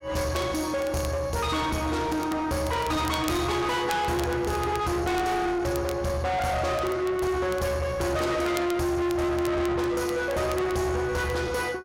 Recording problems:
distorted audio; soft clipping, signal-to-distortion ratio 7 dB
crackling; vinyl, SNR 18 dB

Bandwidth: 16 kHz